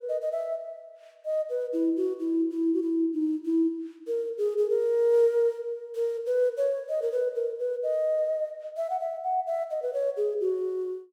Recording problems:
none

